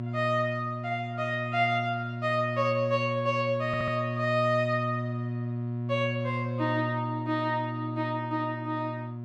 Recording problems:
hum; 60 Hz, harmonics up to 720 Hz, SNR 5 dB
stutter; at 3.5 s

